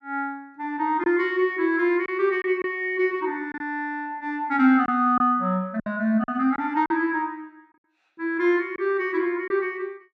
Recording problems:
packet loss; 4% of the sound replaced, filled with silence

